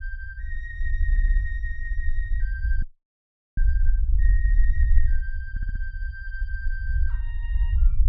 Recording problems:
low-frequency rumble; below 56 Hz, SNR -13 dB
stutter; at 1 s and at 5.5 s
audio cutting out; at 3 s for 1 s

